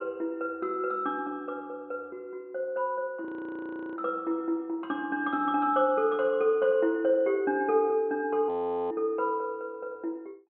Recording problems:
treble missing; nothing above 4 kHz
frozen audio; at 3.5 s for 0.5 s and at 8.5 s

